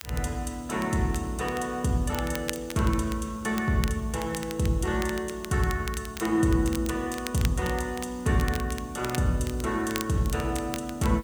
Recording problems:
hiss; slope -1 dB per octave, SNR 28 dB
crackle; vinyl, SNR 13 dB

